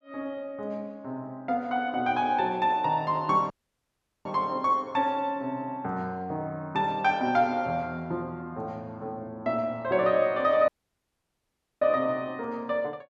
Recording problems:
dropout; at 3.5 s for 1 s and at 11 s for 1 s

